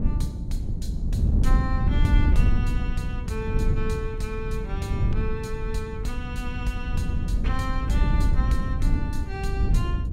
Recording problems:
low-frequency rumble; below 80 Hz, SNR 1 dB
wind on the microphone; below 100 Hz, SNR -7 dB

